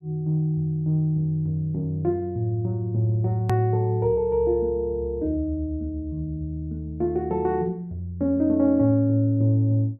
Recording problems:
click at an edit; at 3.5 s

